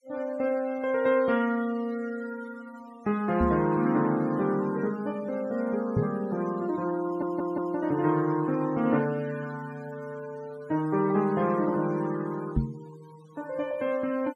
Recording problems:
denoising artefacts; signal-to-artefact ratio 21 dB
microphone thump; at 3.5 s, at 6 s and at 13 s; peak +6 dB vs average level
stutter; at 7 s

